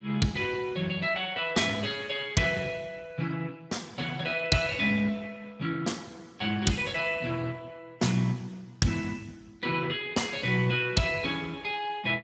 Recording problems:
codec artefacts; Speex, log-spectral distance 5 dB, nothing above 7.6 kHz

